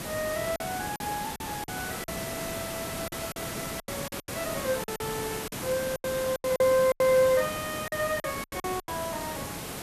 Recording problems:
hiss; slope -4 dB per octave, SNR 5 dB
packet loss; 12% of the sound replaced, filled with silence

